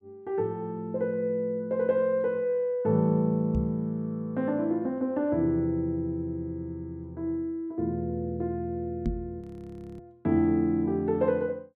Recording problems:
microphone thump; at 3.5 s and at 9 s; peak +3 dB vs average level
audio freezing; at 9.5 s for 0.5 s

